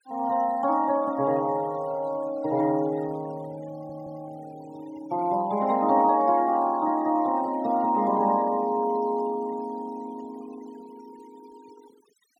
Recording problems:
noise reduction artefacts; signal-to-artefact ratio 23 dB
stutter; at 3.5 s

